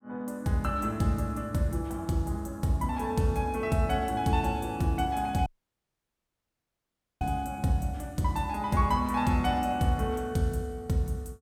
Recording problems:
audio cutting out; at 5.5 s for 2 s

